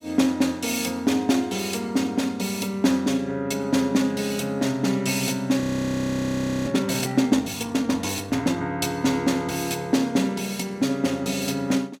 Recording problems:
frozen audio; at 5.5 s for 1 s

